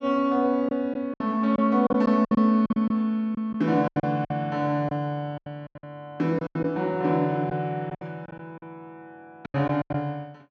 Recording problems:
packet loss; 12% of the sound replaced, filled with silence

